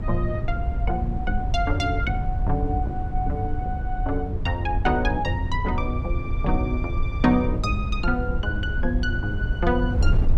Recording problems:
wind on the microphone; below 84 Hz, SNR 1 dB

